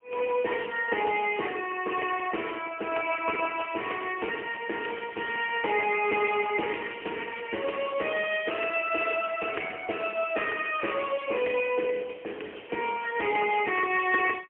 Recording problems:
phone line; 280 Hz to 3.1 kHz, AMR-NB, then MP3

